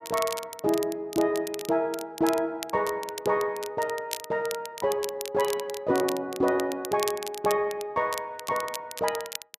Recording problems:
crackle; vinyl, SNR 11 dB

